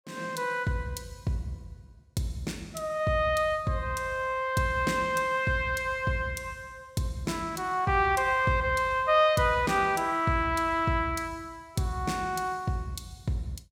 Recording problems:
none

